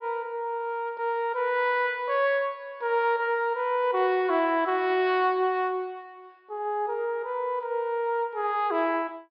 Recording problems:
treble cut off; nothing above 5.5 kHz

